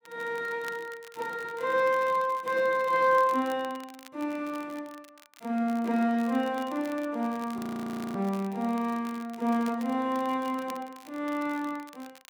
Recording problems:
crackling; vinyl, SNR 22 dB
frozen audio; at 7.5 s for 0.5 s

